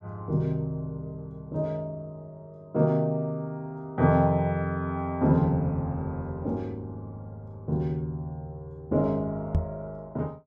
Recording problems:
knock on the microphone; at 9.5 s; peak +6 dB vs average level

